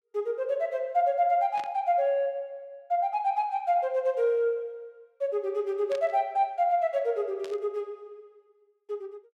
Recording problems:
static burst; at 1.5 s, at 6 s and at 7.5 s; peak -12 dB vs average level

